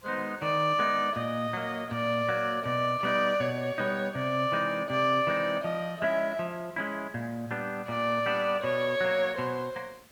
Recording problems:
background hiss; slope -3 dB per octave, SNR 27 dB

